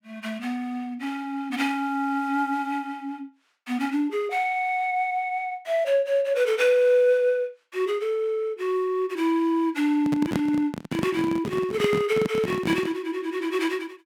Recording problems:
handling noise; from 10 to 13 s; peak +3 dB vs average level

